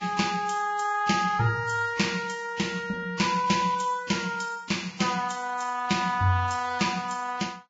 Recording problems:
lossy compression; Vorbis, log-spectral distance 4 dB, nothing above 7.3 kHz

